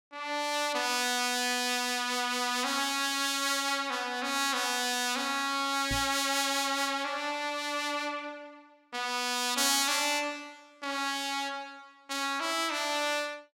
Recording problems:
knock on the microphone; at 6 s; peak -4 dB vs average level

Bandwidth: 16.5 kHz